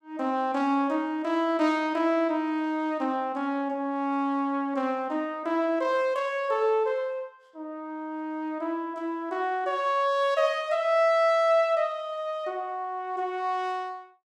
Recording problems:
none

